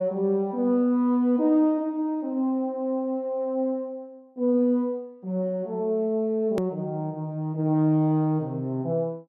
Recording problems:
hard cut with a click; at 6.5 s

